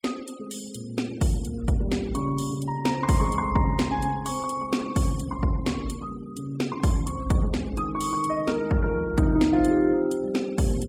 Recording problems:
noise reduction artefacts; signal-to-artefact ratio 21 dB

